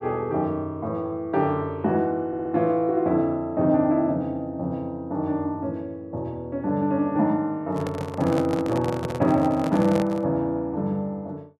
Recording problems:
audio stuttering; at 2.5 s
handling noise; from 7.5 to 10 s; peak -1 dB vs average level

